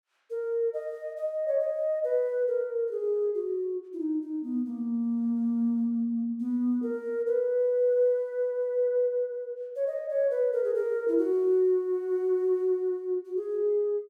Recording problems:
none

